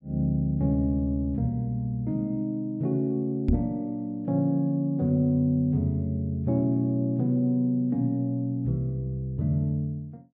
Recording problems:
microphone thump; at 3.5 s; peak +5 dB vs average level

